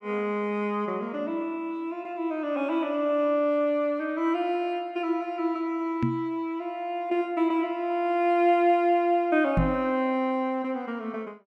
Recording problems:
knock on the microphone; at 6 s and at 9.5 s; peak +5 dB vs average level

